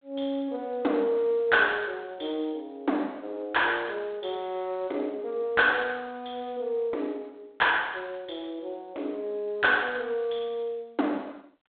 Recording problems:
phone line; 260 Hz to 3.6 kHz, G.726

